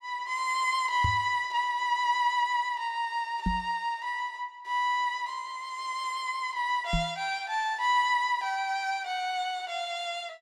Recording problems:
microphone bump; at 1 s, at 3.5 s and at 7 s; peak +3 dB vs average level

